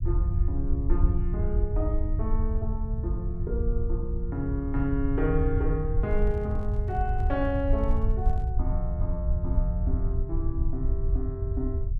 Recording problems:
low-frequency rumble; below 76 Hz, SNR -4 dB
microphone handling noise; from 6 to 8.5 s; peak -10 dB vs average level

